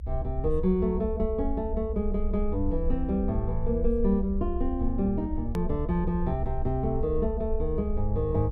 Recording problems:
rumble; below 68 Hz, strongest tone 22 Hz, SNR 5 dB
edit click; at 5.5 s

